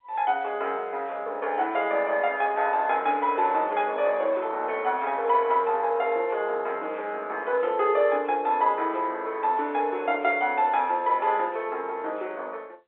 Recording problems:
telephone audio; 320 Hz to 3.8 kHz, G.711

